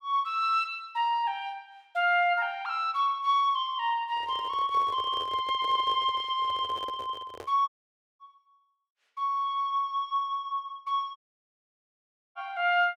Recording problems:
handling noise; from 4 to 7.5 s; peak -9 dB vs average level
audio cutting out; at 7.5 s for 0.5 s and at 11 s for 1 s

